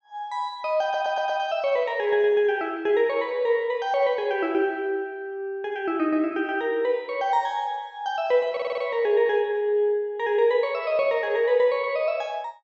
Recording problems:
audio stuttering; at 1 s and at 8.5 s

